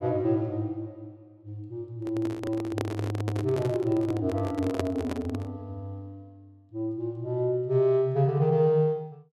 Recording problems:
microphone handling noise; from 2 to 5.5 s; peak +3 dB vs average level

